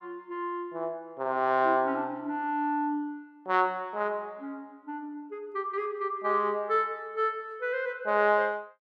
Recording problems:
none

